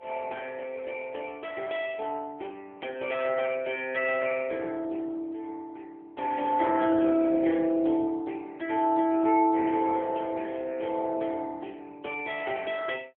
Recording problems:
telephone audio; 220 Hz to 3.1 kHz, AMR-NB

